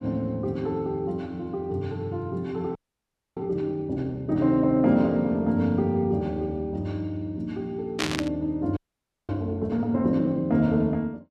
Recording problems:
frozen audio; at 3 s for 0.5 s and at 9 s for 0.5 s
static burst; at 8 s; peak +4 dB vs average level

